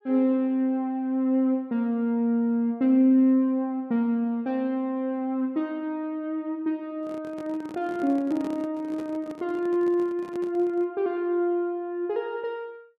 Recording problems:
microphone handling noise; from 7 to 11 s; peak -9 dB vs average level

